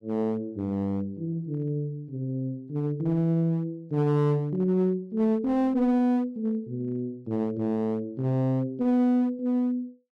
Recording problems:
distortion; hard clipping, uneven, signal-to-distortion ratio 10 dB

